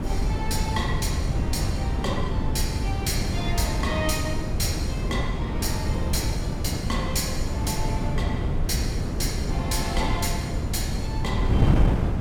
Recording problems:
wind on the microphone; below 190 Hz, SNR -4 dB

